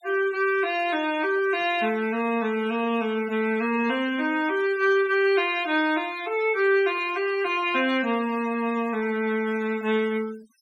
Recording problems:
noise reduction artefacts; signal-to-artefact ratio 20 dB

